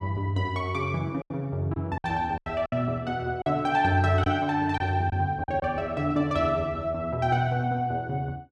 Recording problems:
packet loss; 5% of the sound replaced, filled with silence

